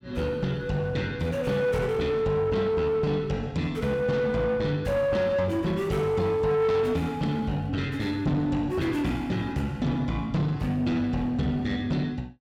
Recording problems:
distortion; soft clipping, signal-to-distortion ratio 10 dB

